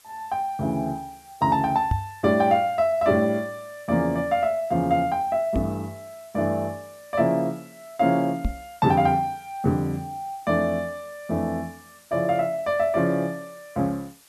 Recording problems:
hiss; slope +1 dB per octave, SNR 27 dB
microphone thump; at 2 s, at 5.5 s and at 8.5 s; peak +3 dB vs average level

